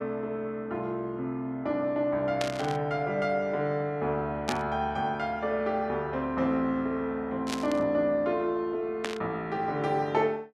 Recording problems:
burst of static; 4 times, first at 2.5 s; peak +1 dB vs average level

